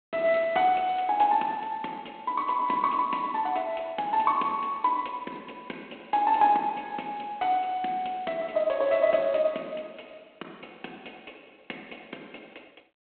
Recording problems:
telephone audio; 220 Hz to 3.4 kHz, G.726

